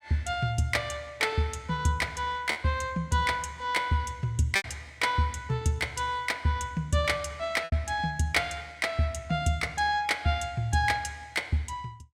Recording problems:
lost packets; 1.7% of the sound replaced, filled with repeated pitch periods

